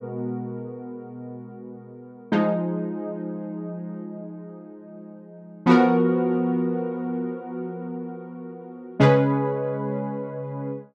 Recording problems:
none

